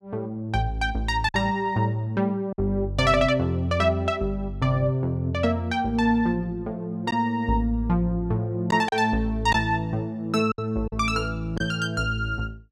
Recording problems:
packet loss; 2% of the sound replaced, filled with silence

